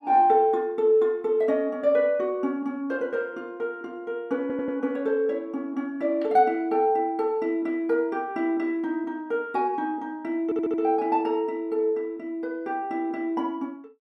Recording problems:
audio stuttering; at 4.5 s and at 10 s

